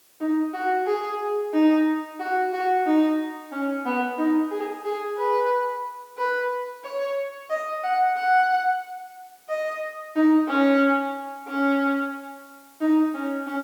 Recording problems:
background hiss; slope -1 dB per octave, SNR 30 dB

